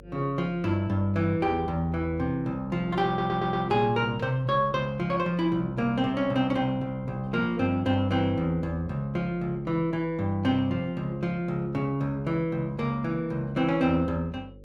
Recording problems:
hum; 50 Hz, harmonics up to 550 Hz, SNR 24 dB
audio stuttering; at 3 s

